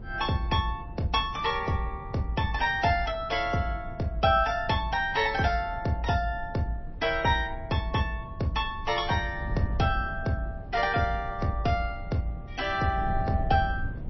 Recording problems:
codec artefacts; MP3, log-spectral distance 2 dB, nothing above 5.7 kHz
wind noise; below 120 Hz, SNR 11 dB

